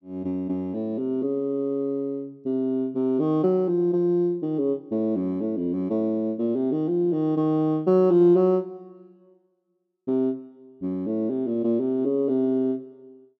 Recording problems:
none

